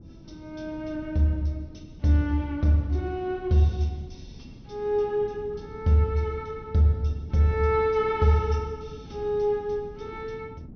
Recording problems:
treble cut off; nothing above 6.2 kHz
wind on the microphone; below 230 Hz, SNR 19 dB

